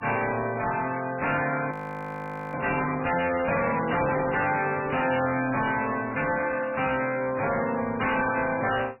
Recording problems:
codec artefacts; MP3, log-spectral distance 8 dB, nothing above 2.6 kHz
distorted audio; hard clipping, uneven, signal-to-distortion ratio 4 dB
audio freezing; at 1.5 s for 1 s

